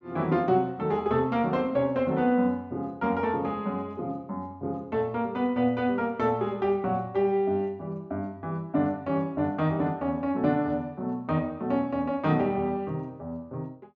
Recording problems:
treble missing; nothing above 8 kHz

